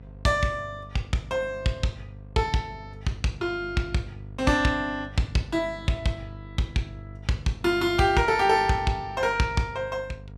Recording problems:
mains hum; 50 Hz, harmonics up to 700 Hz, SNR 17 dB

